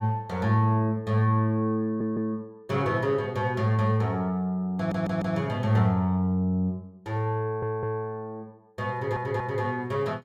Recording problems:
audio stuttering; 4 times, first at 2 s

